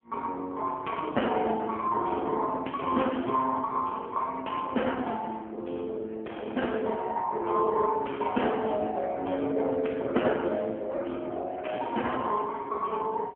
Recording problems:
telephone audio; 220 Hz to 3.2 kHz, AMR-NB

